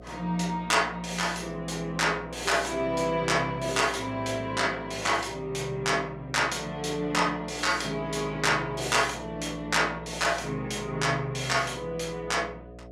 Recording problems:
electrical hum; 60 Hz, harmonics up to 720 Hz, SNR 17 dB

